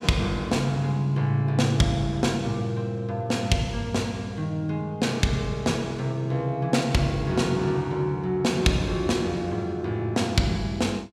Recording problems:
none

